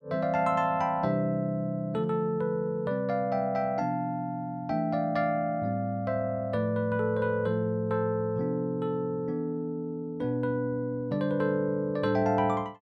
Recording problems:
none

